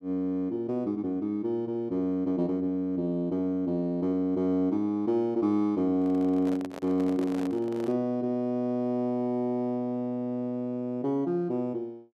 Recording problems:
handling noise; from 6 to 8 s; peak -8 dB vs average level

